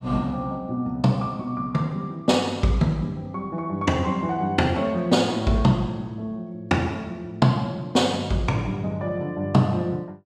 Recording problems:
none

